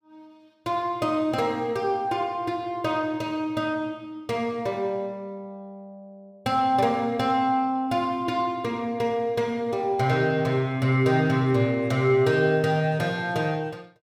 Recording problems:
none

